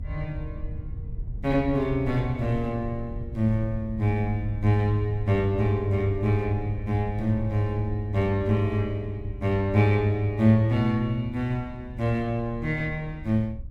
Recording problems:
low-frequency rumble; below 94 Hz, SNR 12 dB

